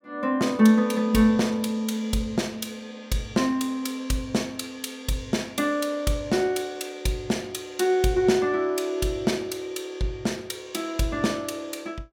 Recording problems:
none

